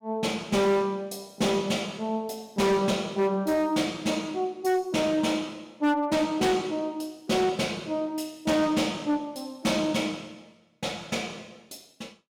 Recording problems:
distorted audio; hard clipping, signal-to-distortion ratio 11 dB

